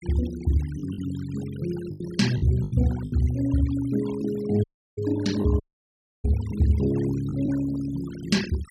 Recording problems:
noise reduction artefacts; signal-to-artefact ratio 18 dB
packet loss; 5% of the sound replaced, filled with the last packet
dropout; at 4.5 s and at 5.5 s for 0.5 s

